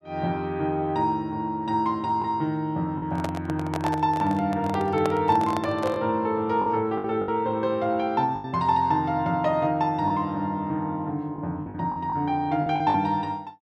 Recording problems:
lost packets; 5% of the sound replaced, filled with the last packet
microphone handling noise; from 3 to 6 s; peak -1 dB vs average level

